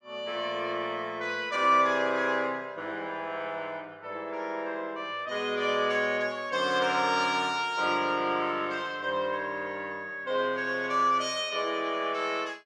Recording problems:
none

